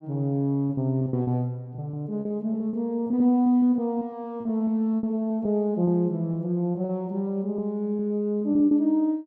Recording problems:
lost packets; 10% of the sound replaced, filled with repeated pitch periods

